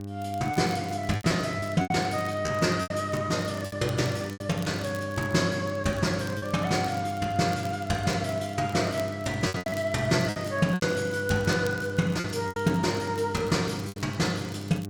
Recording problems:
hum; 50 Hz, harmonics up to 800 Hz, SNR 9 dB
crackling; vinyl, SNR 22 dB
packet loss; 7% of the sound replaced, filled with repeated pitch periods

